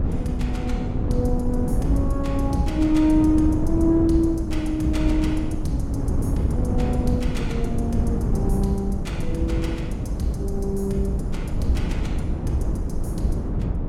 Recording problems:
wind noise; below 190 Hz, SNR 1 dB

